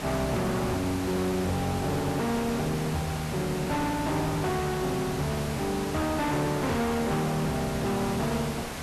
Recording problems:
distorted audio; hard clipping, uneven, signal-to-distortion ratio 8 dB
background hiss; slope -4 dB per octave, SNR 7 dB

